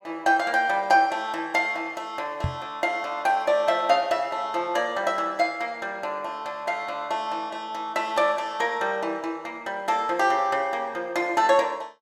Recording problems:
knock on the microphone; at 2.5 s; peak +1 dB vs average level

